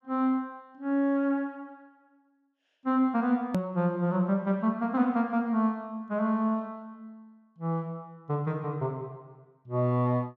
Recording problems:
hard cut with a click; at 3.5 s

